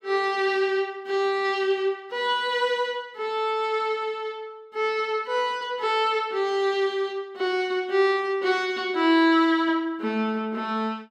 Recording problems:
none

